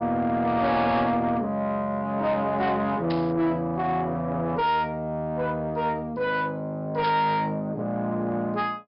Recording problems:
treble cut off; nothing above 5.5 kHz
distorted audio; soft clipping, signal-to-distortion ratio 11 dB
burst of static; at 3 s and at 7 s; peak -6 dB vs average level

